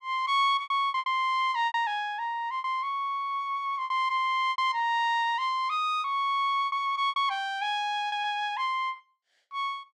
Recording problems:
packet loss; 9% of the sound replaced, filled with repeated pitch periods

